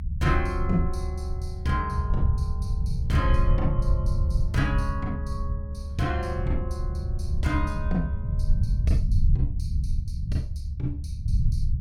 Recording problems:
rumble; below 88 Hz, SNR -3 dB

